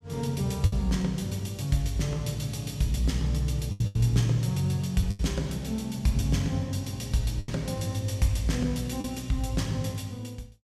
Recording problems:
packet loss; 4% of the sound replaced, filled with the last packet

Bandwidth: 14.5 kHz